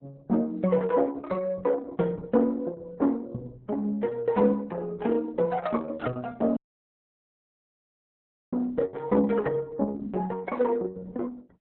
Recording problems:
lossy codec; MP3, then Opus, log-spectral distance 3 dB, nothing above 3.9 kHz
audio cutting out; at 6.5 s for 2 s

